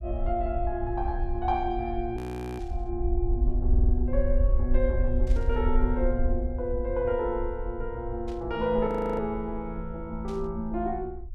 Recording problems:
rumble; below 58 Hz, SNR 1 dB
frozen audio; at 2 s and at 9 s
burst of static; 4 times, first at 2.5 s; peak -15 dB vs average level
stutter; at 3.5 s

